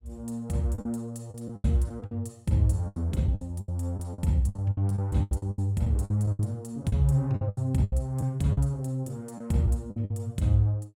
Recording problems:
lost packets; 14% of the sound replaced, filled with the last packet

